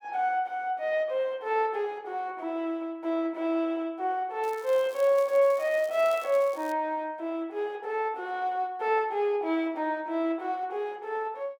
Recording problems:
crackling; from 4.5 to 6.5 s; loose cable, SNR 22 dB

